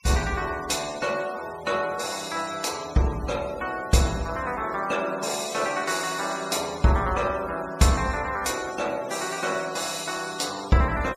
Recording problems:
noise reduction artefacts; signal-to-artefact ratio 16 dB

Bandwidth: 15 kHz